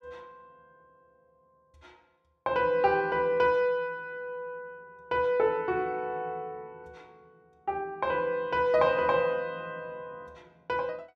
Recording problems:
none

